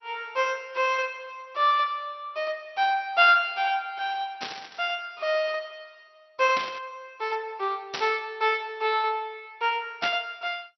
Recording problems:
lossy compression; MP2, log-spectral distance 3 dB, nothing above 5.5 kHz
burst of static; 4 times, first at 4.5 s; peak 0 dB vs average level

